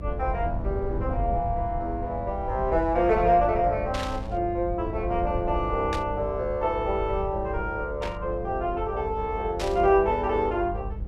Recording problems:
hum; 50 Hz, harmonics up to 500 Hz, SNR 16 dB
rumble; below 76 Hz, SNR 9 dB
static burst; 4 times, first at 4 s; peak -4 dB vs average level

